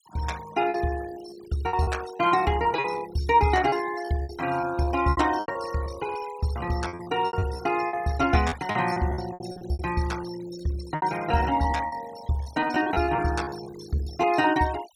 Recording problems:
denoising artefacts; signal-to-artefact ratio 17 dB
packet loss; 14% of the sound replaced, filled with repeated pitch periods

